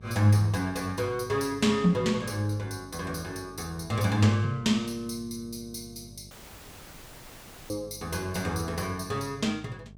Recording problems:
hum; 50 Hz, harmonics up to 700 Hz, SNR 21 dB
dropout; at 6.5 s for 1.5 s

